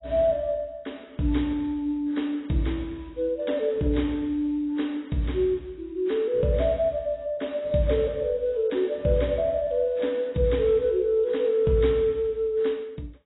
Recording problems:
lossy compression; AAC, log-spectral distance 2 dB, nothing above 3.9 kHz

